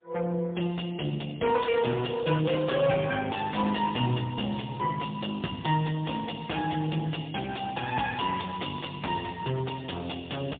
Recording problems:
phone line; 110 Hz to 3.6 kHz, AMR-NB, then MP3
distortion; soft clipping, signal-to-distortion ratio 10 dB

